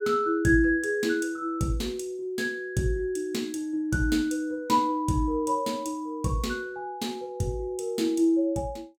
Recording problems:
none

